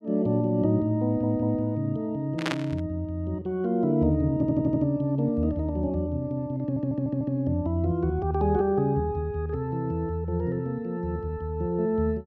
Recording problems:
stutter; at 1 s, at 4.5 s and at 6.5 s
static burst; at 2.5 s; peak +1 dB vs average level

